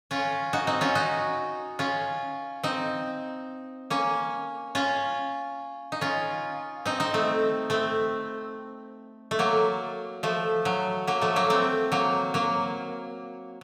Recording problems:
none

